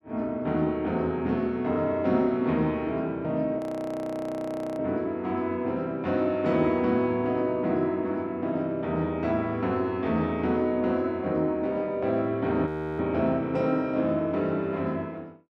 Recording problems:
frozen audio; at 3.5 s for 1 s and at 13 s

